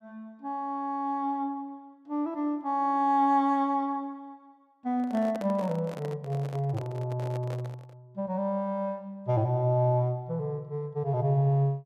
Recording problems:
handling noise; from 5 to 8 s; peak -7 dB vs average level

